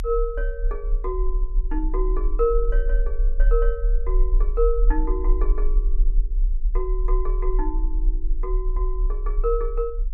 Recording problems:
low-frequency rumble; below 38 Hz, strongest tone 32 Hz, SNR -4 dB

